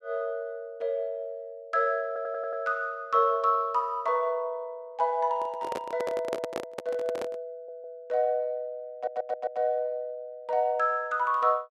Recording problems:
stutter; at 2 s, at 7.5 s and at 9 s
handling noise; from 5.5 to 7.5 s; peak +1 dB vs average level

